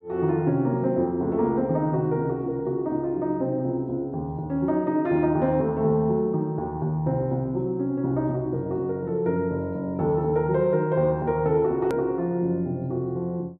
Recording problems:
click at an edit; at 12 s

